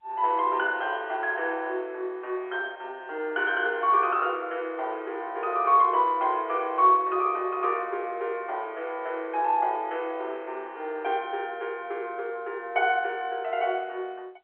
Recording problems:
phone line; 320 Hz to 3.3 kHz, G.711

